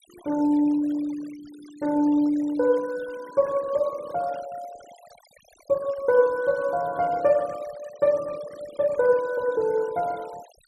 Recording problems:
noise reduction artefacts; signal-to-artefact ratio 23 dB

